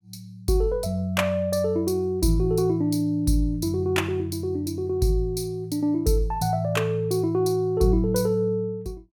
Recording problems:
none

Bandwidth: 17.5 kHz